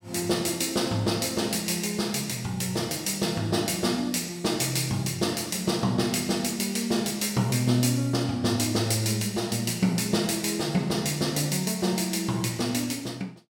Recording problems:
none

